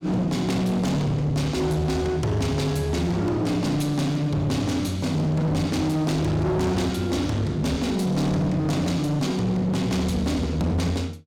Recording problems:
distortion; hard clipping, uneven, signal-to-distortion ratio 7 dB

